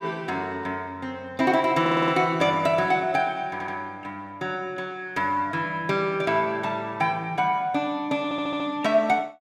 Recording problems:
stutter; at 2 s, at 3.5 s and at 8 s

